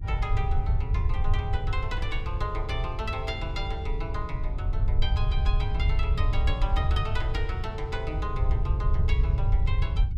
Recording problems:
electrical hum; 50 Hz, harmonics up to 350 Hz, SNR 19 dB
low-frequency rumble; below 82 Hz, SNR -6 dB

